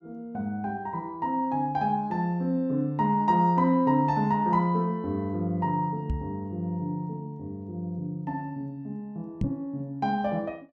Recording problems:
microphone bump; at 6 s and at 9.5 s; peak +3 dB vs average level

